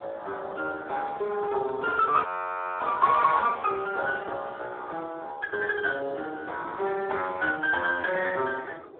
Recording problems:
telephone audio; 320 Hz to 3.5 kHz, Speex
wind on the microphone; below 650 Hz, SNR 19 dB
frozen audio; at 2.5 s for 0.5 s

